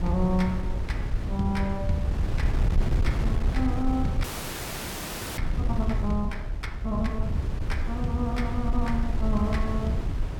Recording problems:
wind on the microphone; below 94 Hz, SNR -1 dB
audio freezing; at 4 s for 1 s

